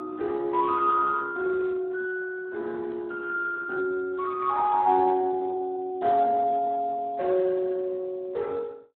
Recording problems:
phone line; 300 Hz to 2 kHz, Speex

